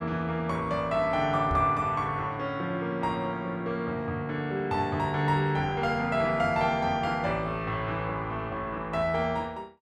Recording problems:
knock on the microphone; at 1.5 s; peak -1 dB vs average level

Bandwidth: 14 kHz